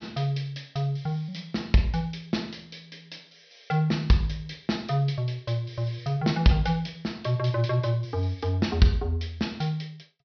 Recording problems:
low-pass filter; nothing above 5.8 kHz

